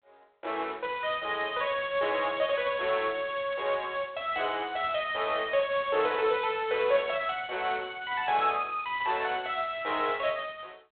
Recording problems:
telephone audio; 340 Hz to 3.5 kHz, G.726

